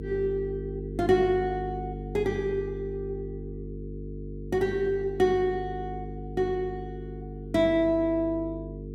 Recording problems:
hum; 50 Hz, harmonics up to 450 Hz, SNR 10 dB

